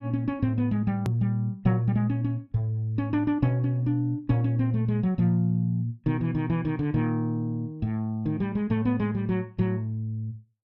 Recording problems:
edit click; at 1 s

